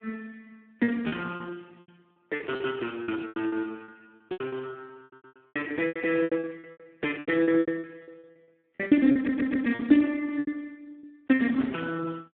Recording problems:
phone line; 220 Hz to 2.6 kHz, Speex
lost packets; 16% of the sound replaced, filled with repeated pitch periods
audio stuttering; at 5 s and at 9 s

